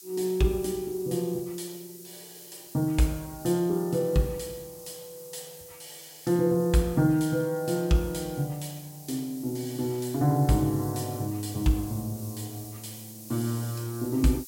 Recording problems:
background hiss; SNR 17 dB

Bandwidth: 16.5 kHz